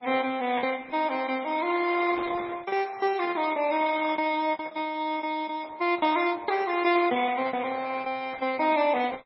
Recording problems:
lossy codec; Opus, then MP3, log-spectral distance 4 dB, nothing above 5.5 kHz
packet loss; 11% of the sound replaced, filled with repeated pitch periods

